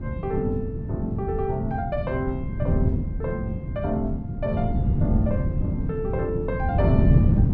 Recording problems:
wind on the microphone; below 170 Hz, SNR -3 dB

